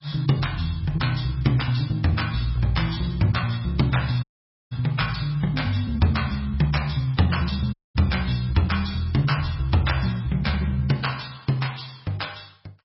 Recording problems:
lossy compression; MP3, log-spectral distance 5 dB, nothing above 5.5 kHz
dropout; at 4 s and at 7.5 s

